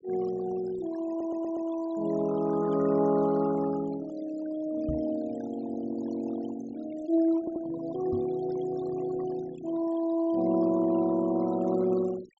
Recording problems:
treble missing; nothing above 7.8 kHz
noise reduction artefacts; signal-to-artefact ratio 19 dB
audio stuttering; at 1 s and at 7.5 s
microphone thump; at 5 s and at 8 s; peak -2 dB vs average level

